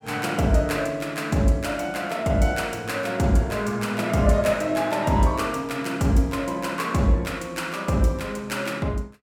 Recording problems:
none

